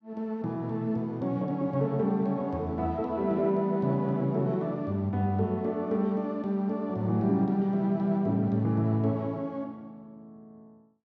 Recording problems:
none

